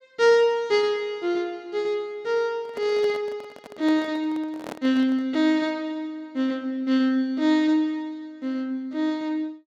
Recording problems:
handling noise; from 2.5 to 5.5 s; peak -7 dB vs average level

